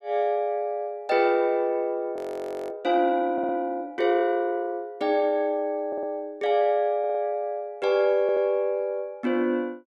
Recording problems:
audio freezing; at 2 s for 0.5 s
stutter; 4 times, first at 3.5 s

